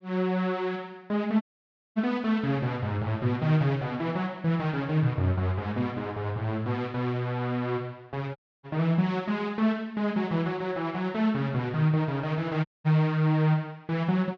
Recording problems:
dropout; at 1.5 s for 0.5 s, at 8.5 s and at 13 s

